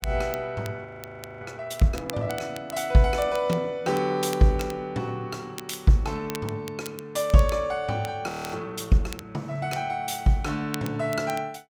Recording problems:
crackling; vinyl, SNR 17 dB
frozen audio; at 1 s for 0.5 s and at 8.5 s

